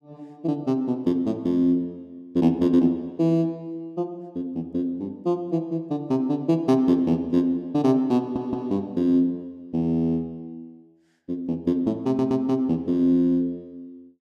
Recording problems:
stutter; at 8 s and at 12 s

